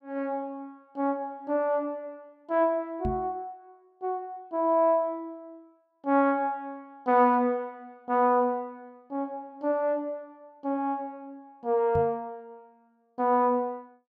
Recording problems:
knock on the microphone; at 3 s and at 12 s; peak -1 dB vs average level

